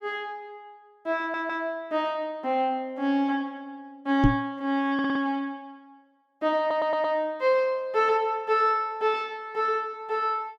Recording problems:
stutter; at 1 s, at 5 s and at 6.5 s
knock on the microphone; at 4 s; peak +9 dB vs average level

